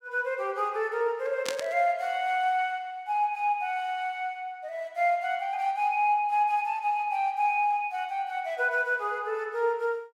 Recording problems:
static burst; at 1.5 s; peak +1 dB vs average level

